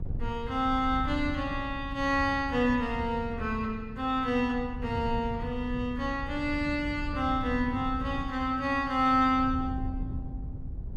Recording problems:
wind noise; below 110 Hz, SNR 10 dB

